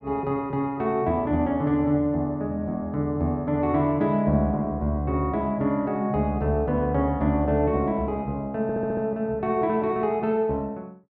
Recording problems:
stutter; at 8.5 s

